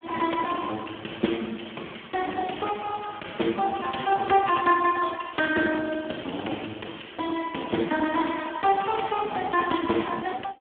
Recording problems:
telephone audio; 190 Hz to 2.3 kHz, Speex

